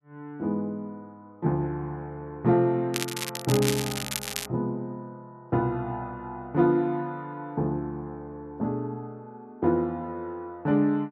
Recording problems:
crackle; from 3 to 4.5 s; loose cable, SNR 4 dB

